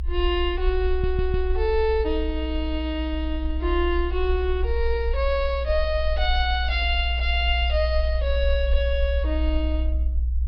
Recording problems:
low-pass filter; nothing above 5.5 kHz
low-frequency rumble; below 62 Hz, strongest tone 60 Hz, SNR 1 dB
audio stuttering; at 1 s

